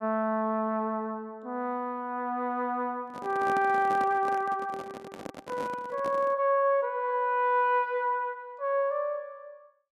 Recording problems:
handling noise; from 3 to 6.5 s; peak -5 dB vs average level

